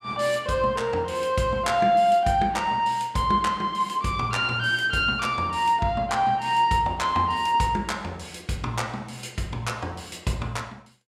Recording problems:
none

